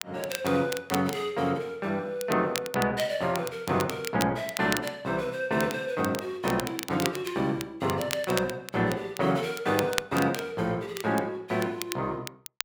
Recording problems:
crackling; vinyl, SNR 9 dB

